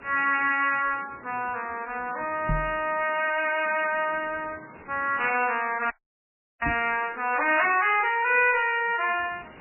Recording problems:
lossy compression; MP3, log-spectral distance 10 dB, nothing above 2.6 kHz
distorted audio; soft clipping, signal-to-distortion ratio 10 dB
background hiss; SNR 23 dB
knock on the microphone; at 2.5 s and at 6.5 s; peak 0 dB vs average level
frozen audio; at 6 s for 0.5 s

